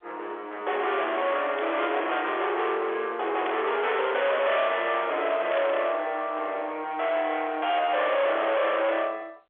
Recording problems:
telephone audio; 370 Hz to 3.6 kHz, G.711
distortion; hard clipping, uneven, signal-to-distortion ratio 7 dB
burst of static; at 1.5 s, at 3.5 s and at 5.5 s; peak -6 dB vs average level

